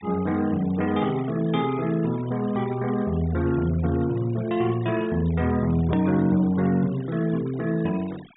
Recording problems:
low-pass filter; nothing above 4 kHz
denoising artefacts; signal-to-artefact ratio 21 dB
hard cut with a click; at 6 s

